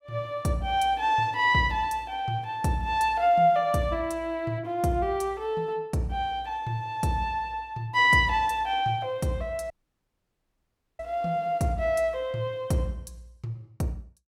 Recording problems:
dropout; at 9.5 s for 1.5 s

